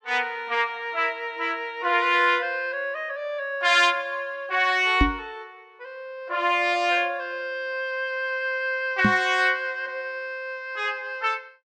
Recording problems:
microphone thump; at 5 s and at 9 s; peak +6 dB vs average level

